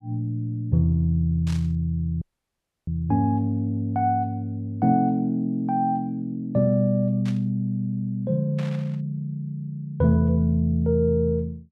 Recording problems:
static burst; at 1.5 s, at 7.5 s and at 8.5 s; peak -12 dB vs average level
dropout; at 2 s for 0.5 s

